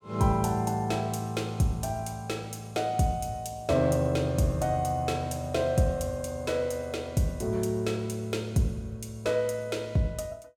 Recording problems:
none

